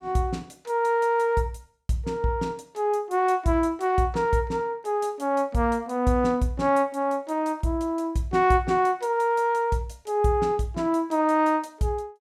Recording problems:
none

